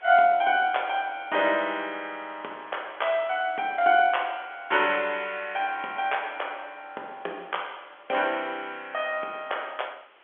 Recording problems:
phone line; 340 Hz to 3.4 kHz, G.711
hiss; SNR 27 dB

